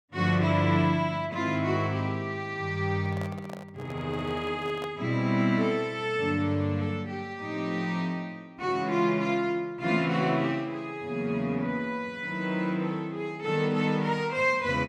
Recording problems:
microphone handling noise; from 3 to 5 s; peak -8 dB vs average level

